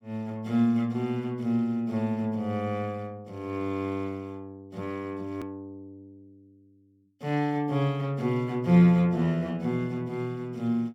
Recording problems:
edit click; at 5.5 s

